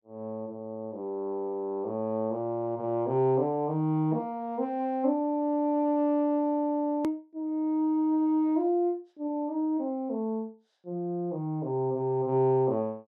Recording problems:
edit click; at 7 s

